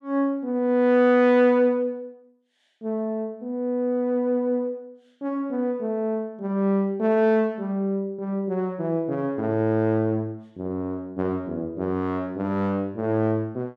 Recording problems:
none

